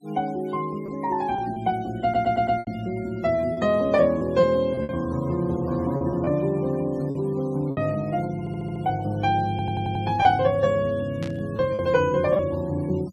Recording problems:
noise reduction artefacts; signal-to-artefact ratio 26 dB
lost packets; 5% of the sound replaced, filled with repeated pitch periods
audio stuttering; at 2 s, at 8.5 s and at 9.5 s
burst of static; at 11 s; peak -11 dB vs average level

